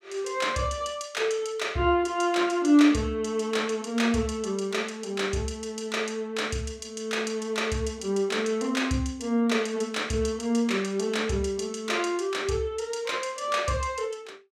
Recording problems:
none

